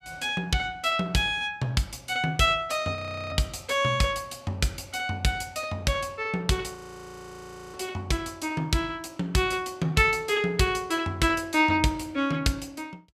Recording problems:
audio freezing; at 3 s and at 7 s for 1 s

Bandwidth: 15 kHz